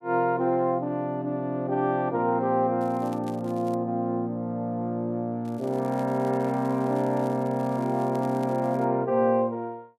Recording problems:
crackle; at 3 s and from 5.5 to 9 s; loose cable, SNR 27 dB

